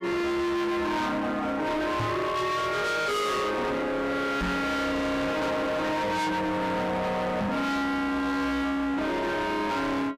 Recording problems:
distortion; hard clipping, signal-to-distortion ratio 6 dB
microphone bump; at 2 s, at 4.5 s and at 7.5 s; peak +3 dB vs average level

